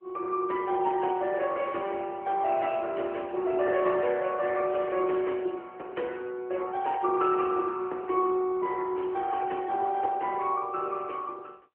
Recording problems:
phone line; 300 Hz to 3.1 kHz, AMR-NB

